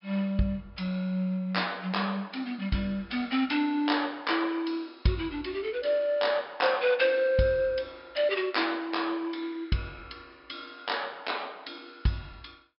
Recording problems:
treble cut off; nothing above 5.3 kHz

